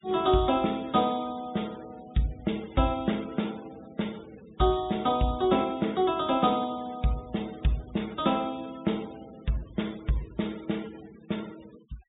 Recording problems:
low-pass filter; nothing above 4 kHz
denoising artefacts; signal-to-artefact ratio 22 dB

